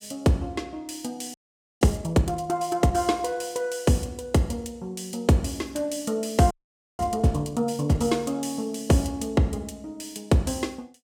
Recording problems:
audio freezing; at 1.5 s and at 6.5 s

